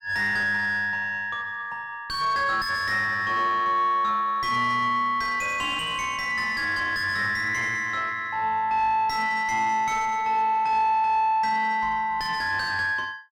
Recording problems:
distorted audio; soft clipping, signal-to-distortion ratio 8 dB

